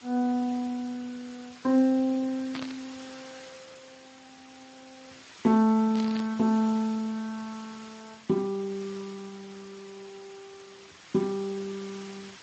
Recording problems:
codec artefacts; Speex, then MP3, log-spectral distance 18 dB, nothing above 13.1 kHz
background hiss; slope 0 dB per octave, SNR 20 dB
static burst; at 2.5 s and at 6 s; peak -6 dB vs average level

